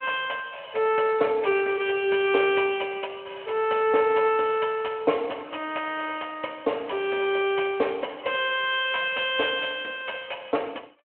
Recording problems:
phone line; 320 Hz to 3.3 kHz, Speex

